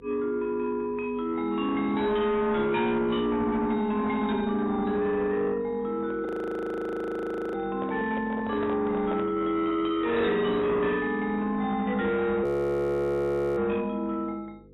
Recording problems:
codec artefacts; AAC, log-spectral distance 2 dB, nothing above 13.1 kHz
distortion; soft clipping, signal-to-distortion ratio 10 dB
hum; 50 Hz, harmonics up to 500 Hz, SNR 25 dB
handling noise; from 6 to 9.5 s; peak -6 dB vs average level
frozen audio; at 6.5 s for 1.5 s and at 12 s for 1 s

